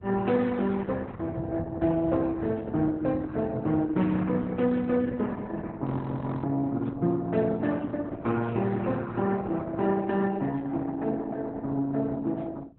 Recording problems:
lossy compression; Opus, then Opus, log-spectral distance 3 dB, nothing above 4 kHz
wind noise; below 160 Hz, SNR 12 dB
frozen audio; at 6 s for 0.5 s

